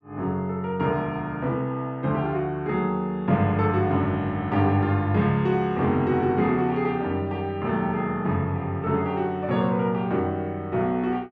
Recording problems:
none

